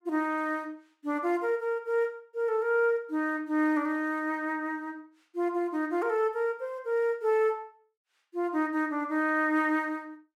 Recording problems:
none

